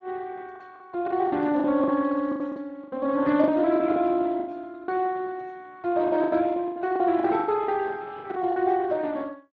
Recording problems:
lossy compression; Speex, log-spectral distance 3 dB
lost packets; 13% of the sound replaced, filled with the last packet

